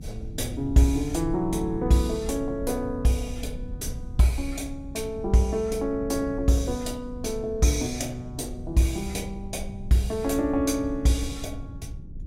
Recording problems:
low-frequency rumble; below 100 Hz, SNR 12 dB

